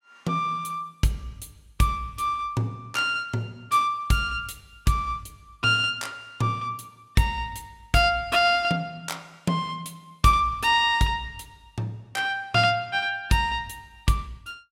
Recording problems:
none

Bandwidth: 16.5 kHz